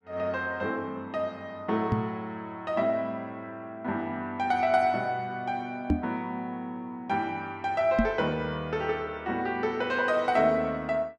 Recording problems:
microphone thump; at 2 s, at 6 s and at 8 s; peak +8 dB vs average level

